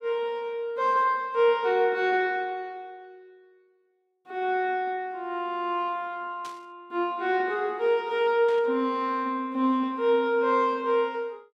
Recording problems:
burst of static; at 6.5 s and at 8.5 s; peak -13 dB vs average level

